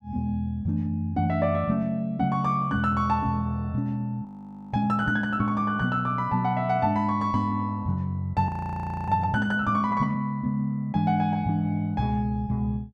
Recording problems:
frozen audio; at 4.5 s and at 8.5 s for 0.5 s

